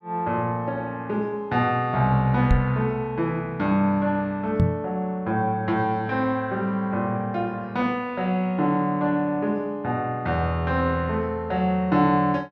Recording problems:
knock on the microphone; at 2.5 s and at 4.5 s; peak +7 dB vs average level

